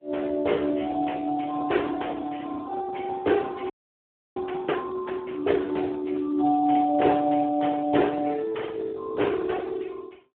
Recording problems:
telephone audio; 280 Hz to 3.2 kHz, Speex
frozen audio; at 3.5 s for 0.5 s

